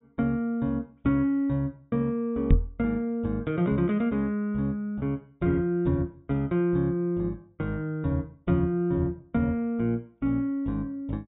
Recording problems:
treble missing; nothing above 4 kHz
knock on the microphone; at 2.5 s; peak +10 dB vs average level

